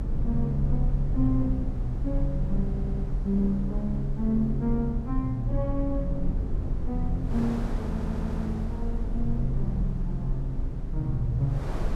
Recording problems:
rumble; below 52 Hz, SNR 3 dB
wind noise; below 660 Hz, SNR 14 dB
stutter; at 2.5 s and at 8 s

